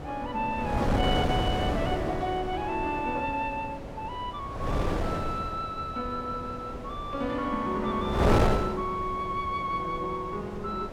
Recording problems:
wind noise; below 640 Hz, SNR 1 dB

